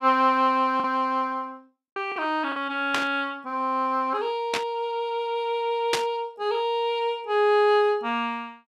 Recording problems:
packet loss; 1.9% of the sound replaced, filled with the last packet
burst of static; at 3 s, at 4.5 s and at 6 s; peak +5 dB vs average level

